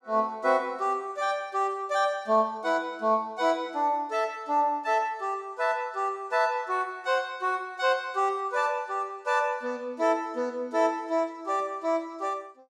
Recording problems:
none

